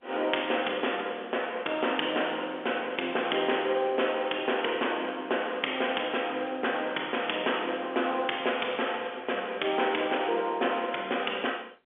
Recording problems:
telephone audio; 320 Hz to 3.4 kHz, G.711

